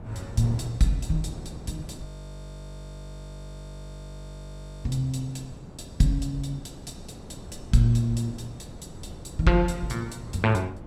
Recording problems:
wind on the microphone; below 320 Hz, SNR 15 dB
frozen audio; at 2 s for 3 s

